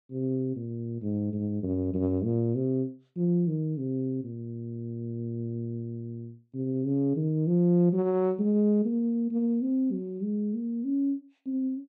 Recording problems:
none

